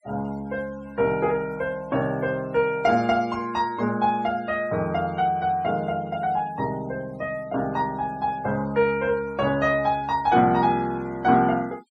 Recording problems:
noise reduction artefacts; signal-to-artefact ratio 26 dB

